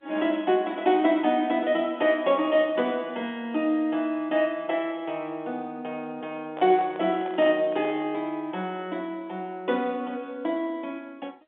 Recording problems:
telephone audio; 260 Hz to 3.6 kHz, G.711
microphone handling noise; from 6.5 to 8 s; peak -7 dB vs average level

